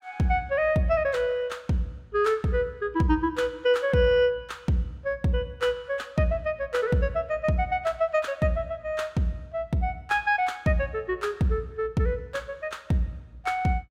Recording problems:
none

